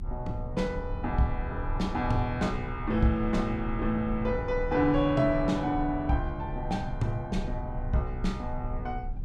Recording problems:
rumble; below 72 Hz, strongest tone 30 Hz, SNR 9 dB

